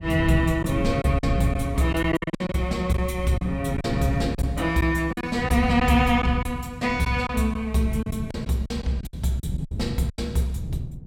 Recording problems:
wind on the microphone; below 170 Hz, SNR 7 dB
packet loss; 9% of the sound replaced, filled with silence

